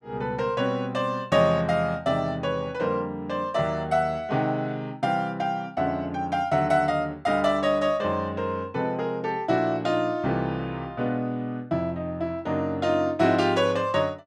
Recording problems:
none

